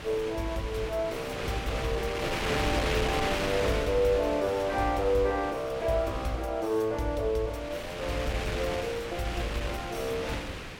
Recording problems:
wind noise; below 2.8 kHz, SNR 5 dB

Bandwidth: 17 kHz